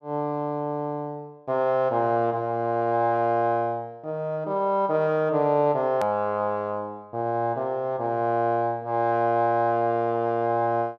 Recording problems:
hard cut with a click; at 6 s

